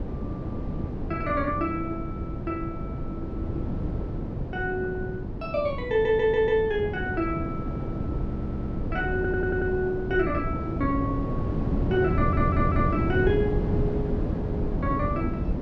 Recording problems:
wind on the microphone; below 280 Hz, SNR 2 dB
stutter; 4 times, first at 6 s

